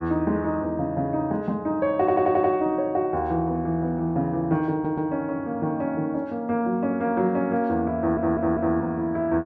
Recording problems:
audio stuttering; at 2 s, at 4.5 s and at 8 s

